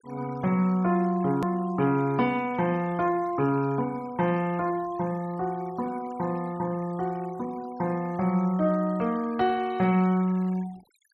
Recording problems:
denoising artefacts; signal-to-artefact ratio 24 dB
edit click; at 1.5 s

